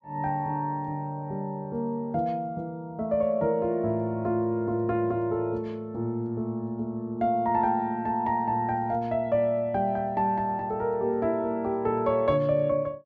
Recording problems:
none

